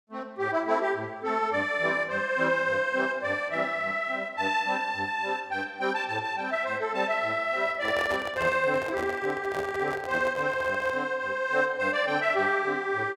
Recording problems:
microphone handling noise; from 7.5 to 11 s; peak -3 dB vs average level

